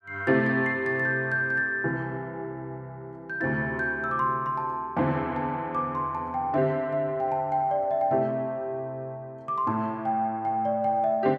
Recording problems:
none

